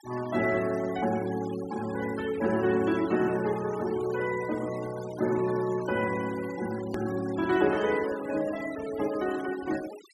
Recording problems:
denoising artefacts; signal-to-artefact ratio 16 dB
click at an edit; at 7 s

